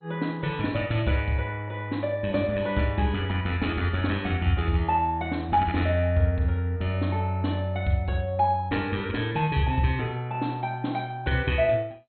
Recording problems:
codec artefacts; MP2, log-spectral distance 2 dB, nothing above 4.2 kHz

